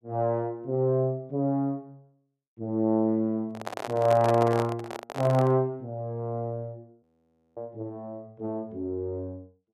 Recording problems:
microphone handling noise; from 3.5 to 5.5 s; peak +1 dB vs average level
audio freezing; at 7 s for 0.5 s

